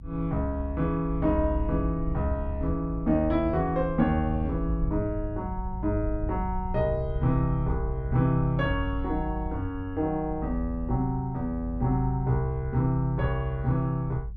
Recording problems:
low-frequency rumble; below 70 Hz, strongest tone 52 Hz, SNR 8 dB

